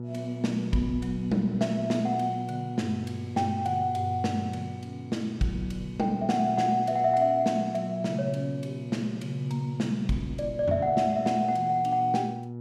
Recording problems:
mains hum; 60 Hz, harmonics up to 840 Hz, SNR 10 dB

